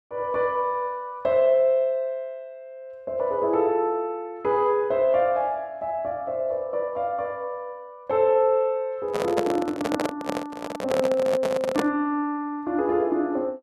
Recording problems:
microphone handling noise; from 9 to 12 s; peak +4 dB vs average level

